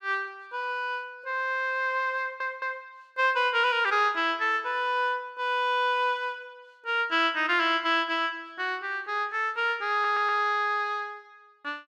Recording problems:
stutter; at 2 s and at 10 s

